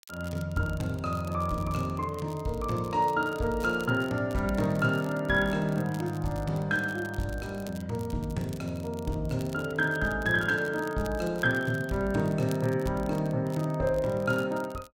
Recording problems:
crackle; vinyl, SNR 22 dB

